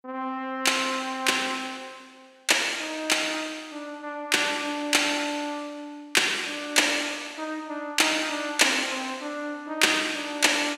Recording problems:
none

